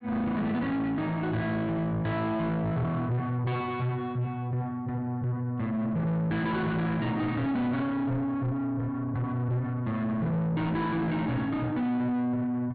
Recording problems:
low-pass filter; nothing above 4.5 kHz
distortion; soft clipping, signal-to-distortion ratio 7 dB

